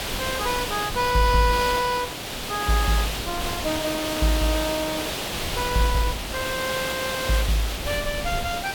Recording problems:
hiss; slope -2 dB per octave, SNR 3 dB
wind noise; below 110 Hz, SNR 13 dB

